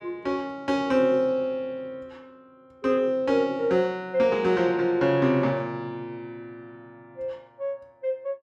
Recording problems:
none

